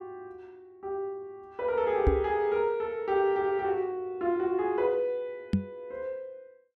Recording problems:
microphone thump; at 2 s and at 5.5 s; peak +7 dB vs average level

